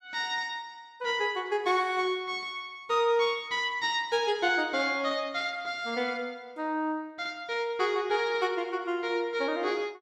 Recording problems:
none

